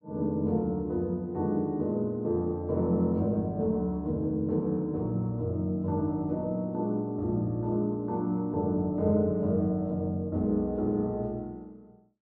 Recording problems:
none

